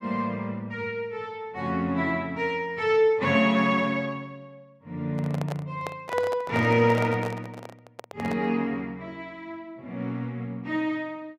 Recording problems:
handling noise; from 5 to 8.5 s; peak -2 dB vs average level

